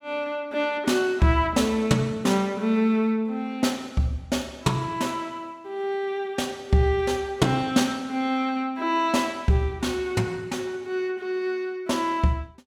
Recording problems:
none

